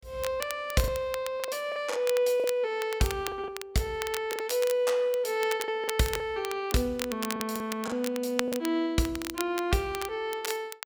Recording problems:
crackle; vinyl, SNR 10 dB
lost packets; 7% of the sound replaced, filled with the last packet

